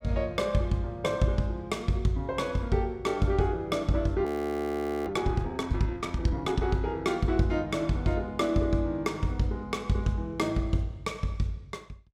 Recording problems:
audio freezing; at 4.5 s for 1 s

